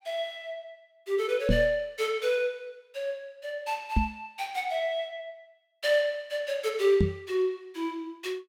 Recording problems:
knock on the microphone; at 1.5 s, at 4 s and at 7 s; peak +7 dB vs average level

